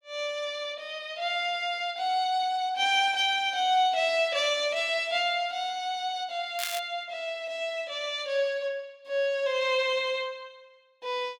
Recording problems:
crackling; at 6.5 s; loose cable, SNR 8 dB

